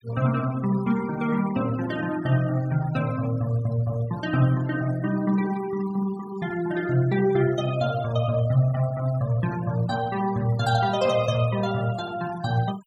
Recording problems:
denoising artefacts; signal-to-artefact ratio 20 dB

